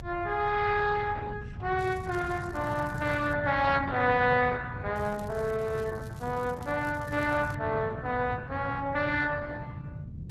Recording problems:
lossy codec; Opus, log-spectral distance 3 dB
low-frequency rumble; below 140 Hz, SNR 8 dB
crackle; from 2 to 3.5 s and from 5 to 7.5 s; loose cable, SNR 26 dB

